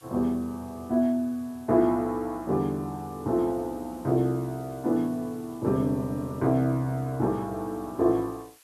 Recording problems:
background hiss; SNR 27 dB

